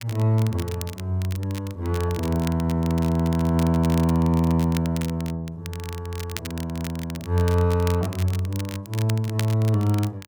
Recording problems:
crackle; vinyl, SNR 15 dB

